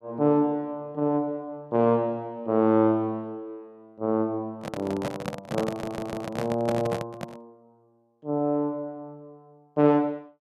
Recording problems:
microphone handling noise; from 4.5 to 7.5 s; peak +1 dB vs average level
audio stuttering; at 5.5 s

